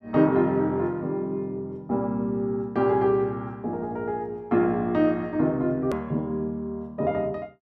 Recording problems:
click at an edit; at 6 s

